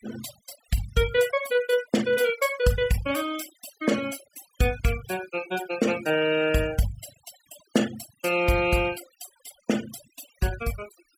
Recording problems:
noise reduction artefacts; signal-to-artefact ratio 14 dB

